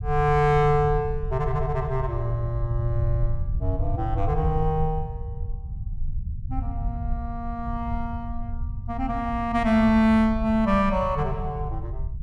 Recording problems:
rumble; below 84 Hz, SNR 7 dB

